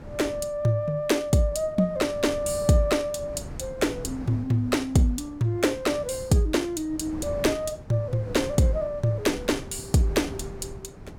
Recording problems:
wind on the microphone; below 300 Hz, SNR 15 dB

